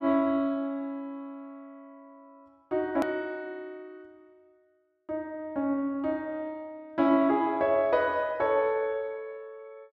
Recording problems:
click at an edit; at 3 s

